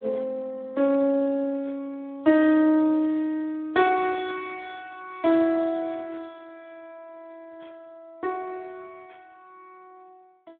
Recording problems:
phone line; 110 Hz to 3.7 kHz, Speex

